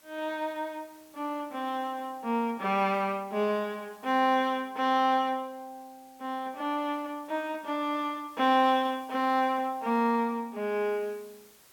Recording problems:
hiss; slope -1 dB per octave, SNR 28 dB

